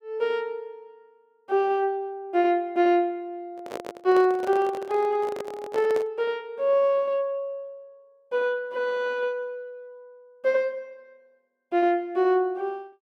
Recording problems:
handling noise; from 3.5 to 6 s; peak -5 dB vs average level

